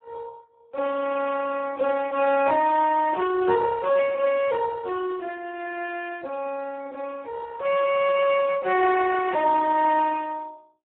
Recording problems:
phone line; 300 Hz to 2.6 kHz, Speex

